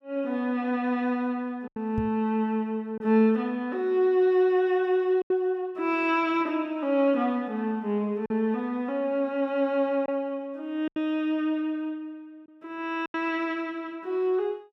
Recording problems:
packet loss; 3% of the sound replaced, filled with silence
microphone thump; at 2 s; peak -2 dB vs average level

